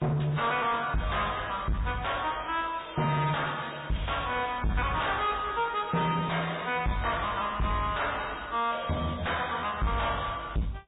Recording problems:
low-pass filter; nothing above 3.8 kHz
lossy compression; MP3, log-spectral distance 9 dB
distortion; soft clipping, signal-to-distortion ratio 6 dB

